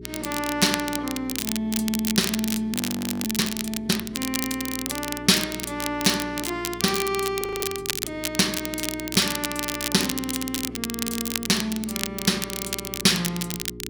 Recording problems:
hum; 60 Hz, harmonics up to 420 Hz, SNR 14 dB
crackling; vinyl, SNR 4 dB
audio freezing; at 2.5 s for 0.5 s and at 7.5 s

